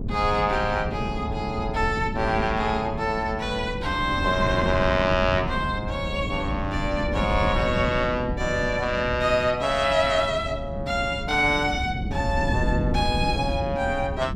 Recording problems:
wind on the microphone; below 220 Hz, SNR 6 dB

